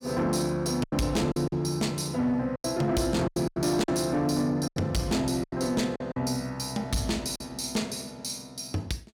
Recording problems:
distorted audio; soft clipping, signal-to-distortion ratio 11 dB
lost packets; 8% of the sound replaced, filled with silence

